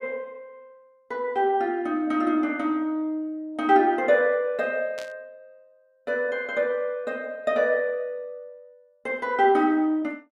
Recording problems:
burst of static; at 5 s; peak -12 dB vs average level

